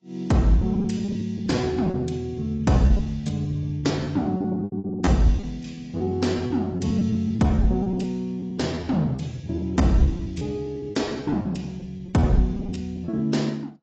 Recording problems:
lossy compression; AAC, log-spectral distance 2 dB, nothing above 7.3 kHz
lost packets; 18% of the sound replaced, filled with repeated pitch periods

